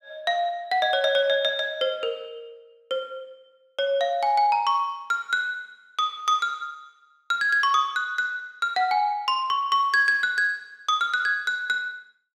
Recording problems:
none

